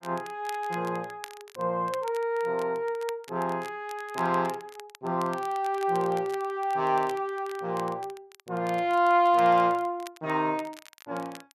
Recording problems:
crackling; vinyl, SNR 21 dB

